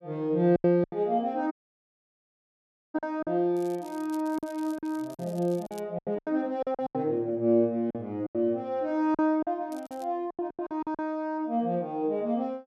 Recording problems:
lost packets; 11% of the sound replaced, filled with silence
dropout; at 1.5 s for 1.5 s
crackle; from 3.5 to 6 s and at 9.5 s; loose cable, SNR 24 dB

